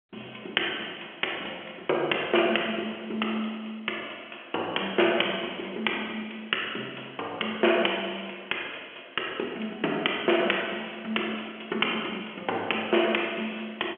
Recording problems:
phone line; 300 Hz to 3.3 kHz, G.711

